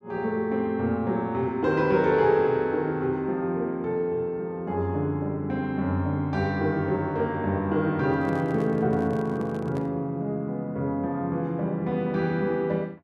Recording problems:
microphone handling noise; from 8 to 10 s; peak -12 dB vs average level

